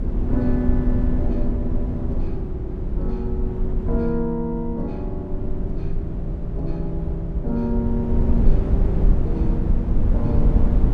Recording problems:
wind on the microphone; below 82 Hz, SNR -3 dB

